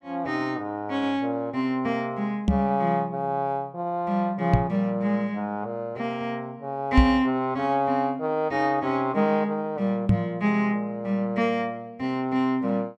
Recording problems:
knock on the microphone; 4 times, first at 2.5 s; peak +10 dB vs average level

